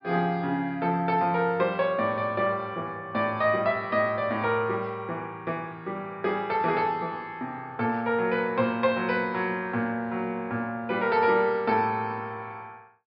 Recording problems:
treble missing; nothing above 5.5 kHz

